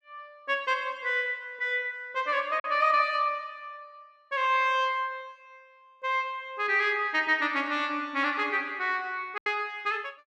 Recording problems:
lost packets; 1.3% of the sound replaced, filled with silence

